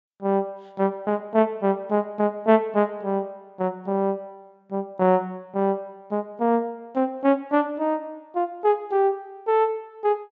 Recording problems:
treble missing; nothing above 8 kHz

